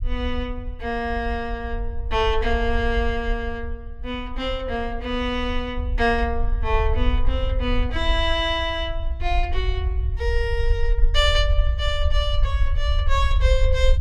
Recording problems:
rumble; below 62 Hz, SNR 1 dB

